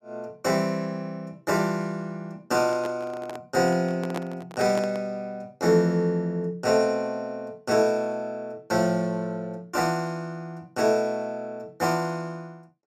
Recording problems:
microphone handling noise; from 2.5 to 5 s; peak -2 dB vs average level

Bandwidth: 14.5 kHz